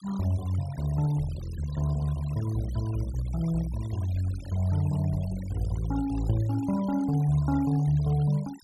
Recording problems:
noise reduction artefacts; signal-to-artefact ratio 20 dB

